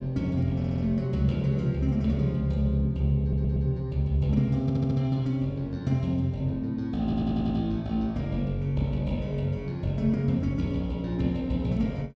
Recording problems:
stutter; 4 times, first at 0.5 s

